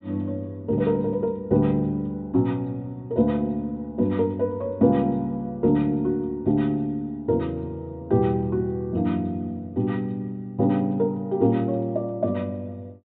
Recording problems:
low-pass filter; nothing above 4 kHz

